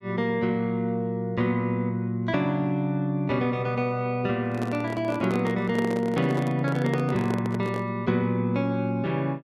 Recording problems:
microphone handling noise; from 4.5 to 8 s; peak -2 dB vs average level

